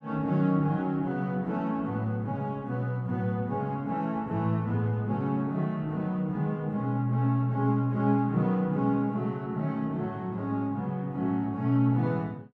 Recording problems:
none

